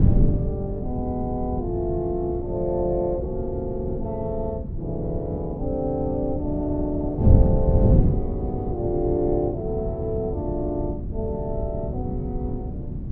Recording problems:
wind on the microphone; below 170 Hz, SNR -1 dB

